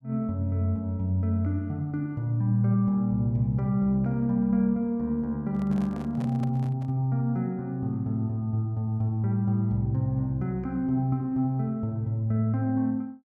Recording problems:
microphone handling noise; from 5.5 to 7 s; peak -12 dB vs average level

